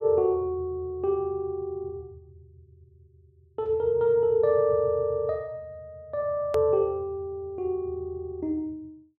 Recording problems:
hard cut with a click; at 6.5 s

